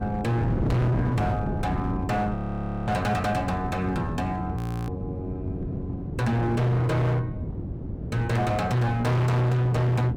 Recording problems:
distorted audio; hard clipping, signal-to-distortion ratio 7 dB
wind noise; below 260 Hz, SNR 6 dB
audio freezing; at 2.5 s for 0.5 s and at 4.5 s

